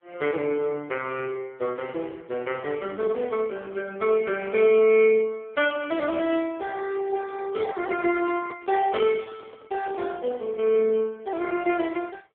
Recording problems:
telephone audio; 190 Hz to 3.2 kHz, AMR-NB
microphone handling noise; from 7 to 11 s; peak -12 dB vs average level

